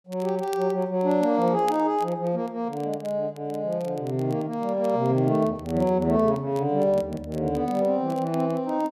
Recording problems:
crackle; vinyl, SNR 26 dB

